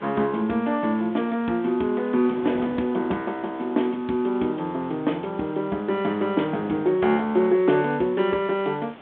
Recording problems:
phone line; 190 Hz to 3.9 kHz, G.726
hiss; SNR 25 dB
wind noise; below 780 Hz, SNR 20 dB

